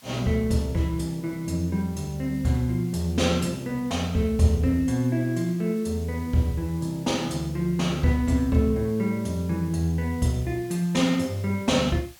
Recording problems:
background hiss; slope +1 dB per octave, SNR 24 dB

